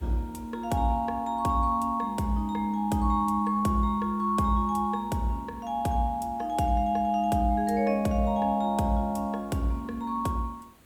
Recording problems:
hiss; slope -5 dB per octave, SNR 30 dB

